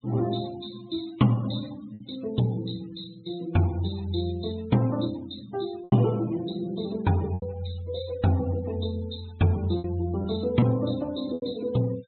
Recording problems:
treble cut off; nothing above 4 kHz
noise reduction artefacts; signal-to-artefact ratio 20 dB
packet loss; 4% of the sound replaced, filled with repeated pitch periods

